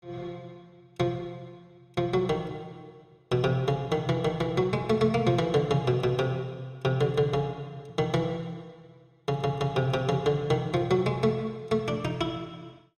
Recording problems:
none

